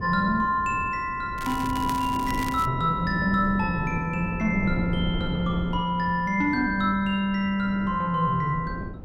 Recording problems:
wind noise; below 280 Hz, SNR 10 dB
crackling; from 1.5 to 2.5 s; loose cable, SNR 14 dB

